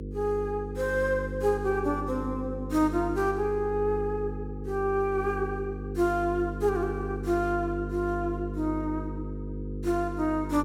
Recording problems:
electrical hum; 50 Hz, harmonics up to 500 Hz, SNR 7 dB

